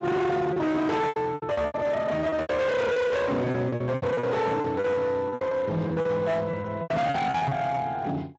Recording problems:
codec artefacts; Speex, log-spectral distance 3 dB, nothing above 7.6 kHz
distorted audio; hard clipping, uneven, signal-to-distortion ratio 7 dB
lost packets; 16% of the sound replaced, filled with repeated pitch periods
microphone thump; at 1.5 s, at 4 s and at 7.5 s; peak -1 dB vs average level

